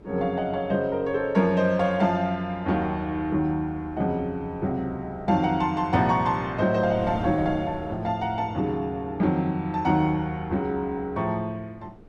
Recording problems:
wind on the microphone; below 390 Hz, SNR 19 dB

